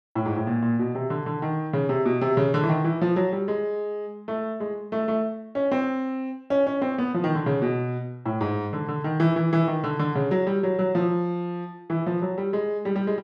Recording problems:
none

